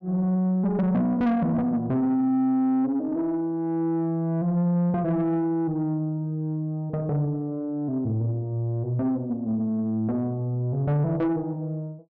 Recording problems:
distortion; soft clipping, signal-to-distortion ratio 11 dB

